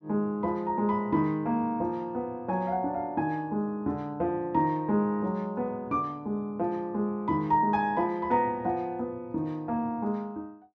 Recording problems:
none

